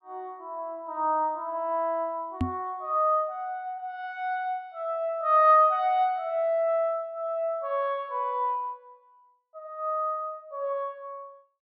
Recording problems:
knock on the microphone; at 2.5 s; peak +3 dB vs average level

